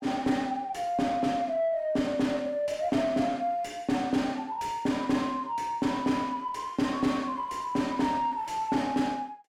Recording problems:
distortion; soft clipping, signal-to-distortion ratio 11 dB

